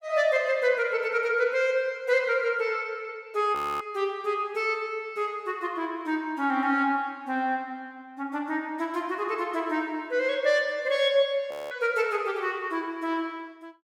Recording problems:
frozen audio; at 3.5 s and at 12 s

